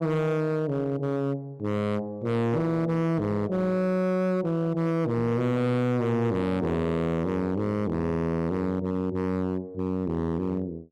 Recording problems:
distorted audio; hard clipping, signal-to-distortion ratio 8 dB

